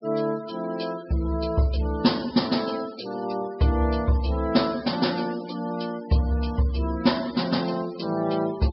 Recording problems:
treble missing; nothing above 5.4 kHz
denoising artefacts; signal-to-artefact ratio 19 dB

